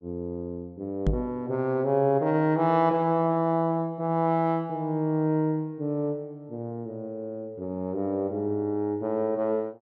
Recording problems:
microphone thump; at 1 s; peak +4 dB vs average level

